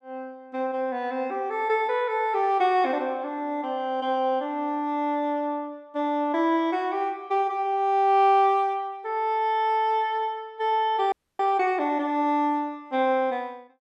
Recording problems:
frozen audio; at 11 s

